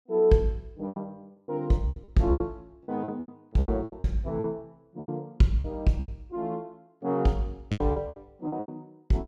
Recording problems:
lost packets; 16% of the sound replaced, filled with repeated pitch periods

